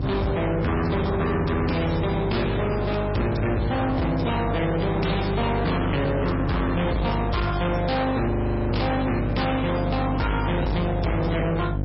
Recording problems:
lossy codec; MP3, log-spectral distance 5 dB, nothing above 5.5 kHz
distortion; hard clipping, signal-to-distortion ratio 5 dB
hum; 50 Hz, harmonics up to 1.1 kHz, SNR 3 dB
frozen audio; at 8.5 s

